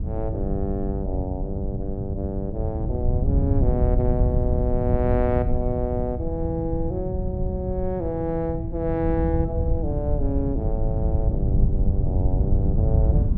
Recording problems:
wind on the microphone; below 110 Hz, SNR -3 dB

